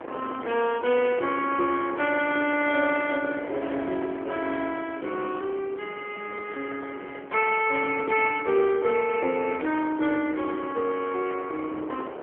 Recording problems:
telephone audio; 300 Hz to 3.2 kHz, AMR-NB
wind noise; below 820 Hz, SNR 14 dB

